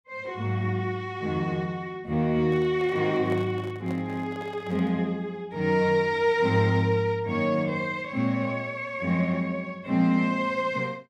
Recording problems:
microphone handling noise; from 2.5 to 5 s; peak -9 dB vs average level

